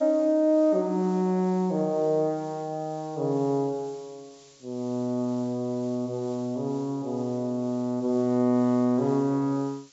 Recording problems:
treble cut off; nothing above 8 kHz
hiss; SNR 27 dB

